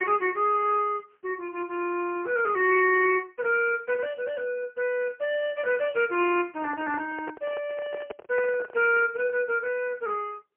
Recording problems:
phone line; 300 Hz to 3.1 kHz, AMR-NB, then MP3
handling noise; from 6.5 to 9 s; peak -8 dB vs average level

